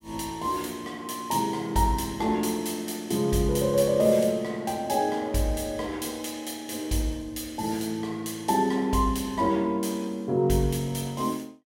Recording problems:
none

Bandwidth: 16.5 kHz